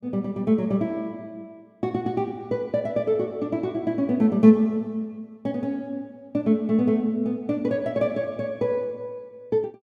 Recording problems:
none

